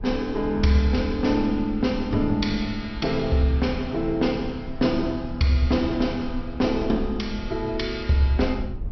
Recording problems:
low-pass filter; nothing above 5.7 kHz
rumble; below 70 Hz, SNR 13 dB

